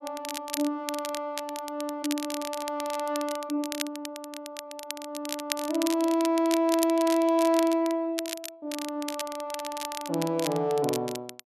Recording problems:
crackling; vinyl, SNR 9 dB

